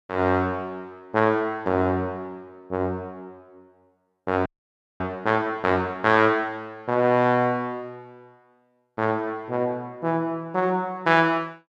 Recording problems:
audio freezing; at 4.5 s for 0.5 s

